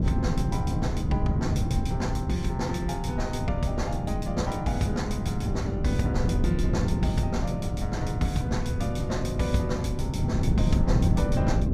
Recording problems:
wind on the microphone; below 180 Hz, SNR -2 dB

